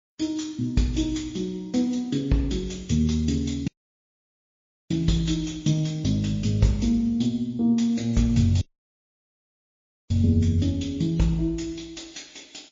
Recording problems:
codec artefacts; MP3, log-spectral distance 5 dB, nothing above 17 kHz
audio cutting out; at 3.5 s for 1 s and at 8.5 s for 1.5 s

